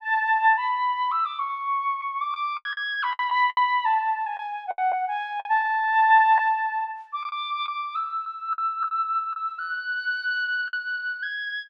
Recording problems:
lost packets; 6% of the sound replaced, filled with the last packet

